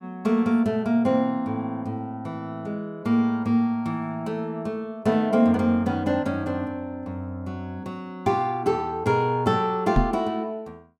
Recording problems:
microphone thump; at 10 s; peak +6 dB vs average level

